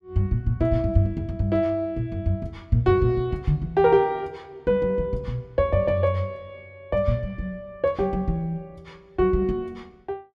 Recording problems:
none

